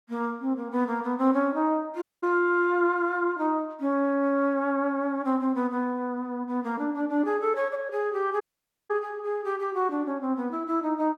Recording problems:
audio cutting out; at 2 s and at 8.5 s

